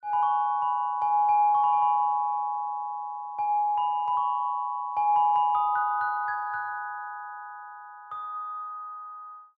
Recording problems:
none

